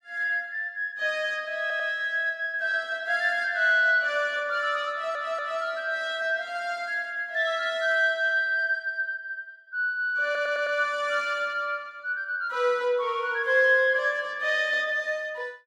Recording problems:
audio stuttering; at 1.5 s, at 5 s and at 10 s

